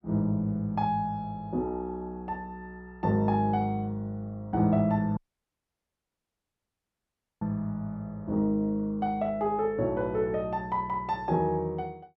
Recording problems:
audio cutting out; at 5 s for 2 s

